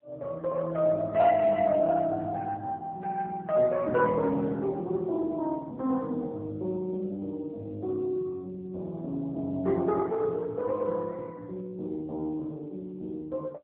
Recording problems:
phone line; 220 Hz to 2.8 kHz, AMR-NB

